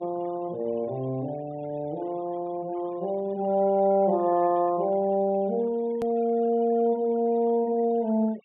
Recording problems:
treble cut off; nothing above 4 kHz
noise reduction artefacts; signal-to-artefact ratio 26 dB
hard cut with a click; at 6 s

